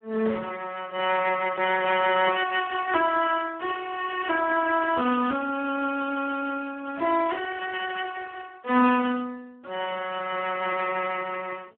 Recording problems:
telephone audio; 220 Hz to 2.3 kHz, Speex

